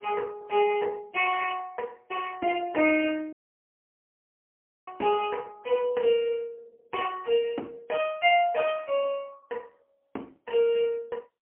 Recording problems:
telephone audio; 240 Hz to 3.1 kHz, AMR-NB, then MP3
dropout; at 3.5 s for 1.5 s

